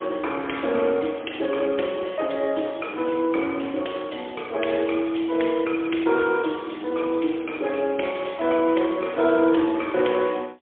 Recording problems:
phone line; 260 Hz to 3.4 kHz, AMR-NB, then MP3

